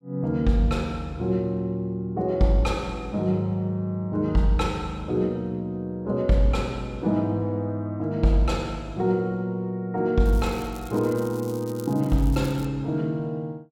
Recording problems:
crackle; from 10 to 13 s; loose cable, SNR 21 dB

